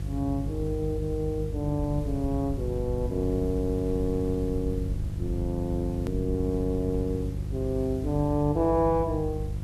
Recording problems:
hum; 50 Hz, harmonics up to 500 Hz, SNR 5 dB
background hiss; slope -2 dB per octave, SNR 24 dB
low-frequency rumble; below 80 Hz, SNR 8 dB
click at an edit; at 6 s

